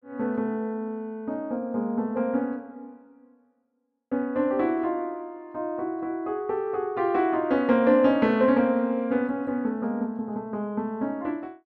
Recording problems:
none

